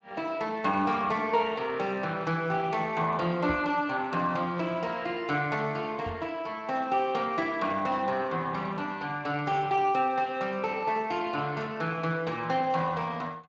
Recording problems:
codec artefacts; Speex, log-spectral distance 3 dB
knock on the microphone; at 3.5 s and at 6 s; peak -2 dB vs average level

